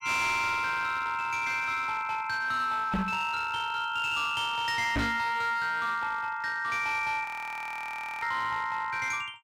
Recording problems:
distortion; hard clipping, uneven, signal-to-distortion ratio 10 dB
microphone thump; at 3 s and at 5 s; peak +3 dB vs average level
audio freezing; at 7.5 s for 1 s

